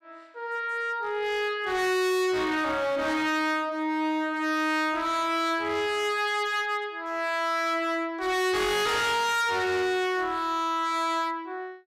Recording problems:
distorted audio; hard clipping, signal-to-distortion ratio 6 dB

